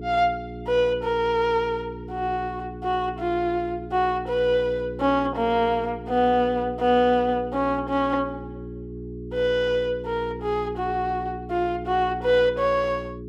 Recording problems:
electrical hum; 60 Hz, harmonics up to 420 Hz, SNR 12 dB

